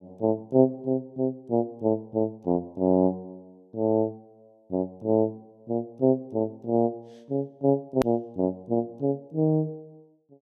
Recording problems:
click at an edit; at 8 s

